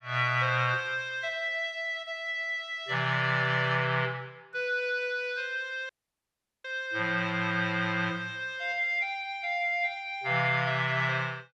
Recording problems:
dropout; at 6 s for 1 s

